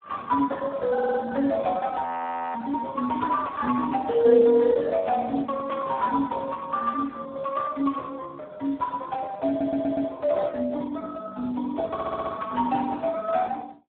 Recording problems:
telephone audio; 220 Hz to 2 kHz, Speex
stutter; at 1 s, at 9.5 s and at 12 s
audio freezing; at 2 s for 0.5 s
static burst; at 5.5 s; peak -13 dB vs average level

